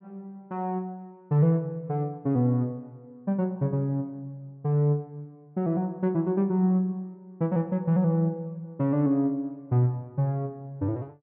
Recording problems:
none

